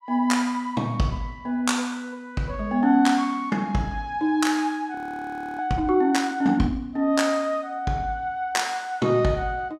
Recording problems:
frozen audio; at 5 s for 0.5 s

